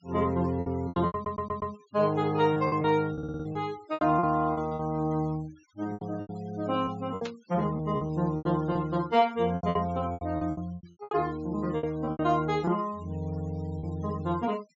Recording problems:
treble cut off; nothing above 8 kHz
denoising artefacts; signal-to-artefact ratio 24 dB
packet loss; 13% of the sound replaced, filled with repeated pitch periods
stutter; at 1 s and at 3 s
burst of static; at 7.5 s; peak -7 dB vs average level

